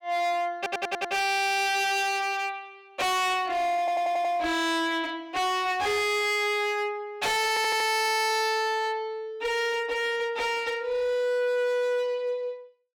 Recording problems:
distortion; hard clipping, signal-to-distortion ratio 7 dB
stutter; at 0.5 s, at 4 s and at 7.5 s

